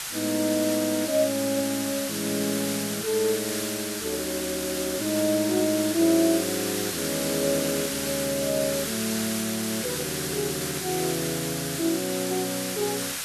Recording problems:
hiss; SNR 3 dB

